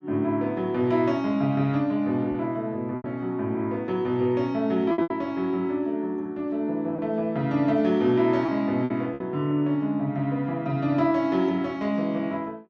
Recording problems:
packet loss; 3% of the sound replaced, filled with repeated pitch periods

